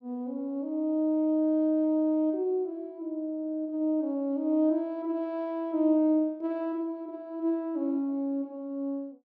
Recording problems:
none

